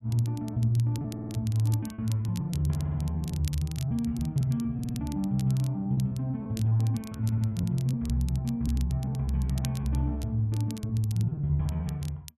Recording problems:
crackling; vinyl, SNR 19 dB
lost packets; 11% of the sound replaced, filled with repeated pitch periods
stutter; 4 times, first at 1 s

